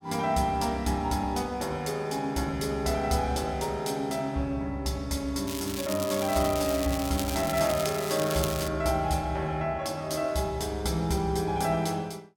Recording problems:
crackling; from 5.5 to 8.5 s; loose cable, SNR 8 dB

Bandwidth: 17 kHz